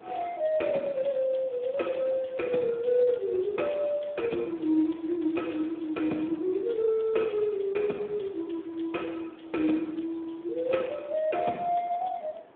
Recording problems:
phone line; 190 Hz to 3.5 kHz, Speex
background hiss; SNR 24 dB

